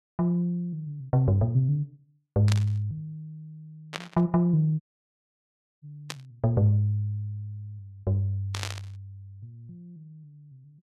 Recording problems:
static burst; 4 times, first at 2.5 s; peak -1 dB vs average level
audio cutting out; at 5 s for 1 s

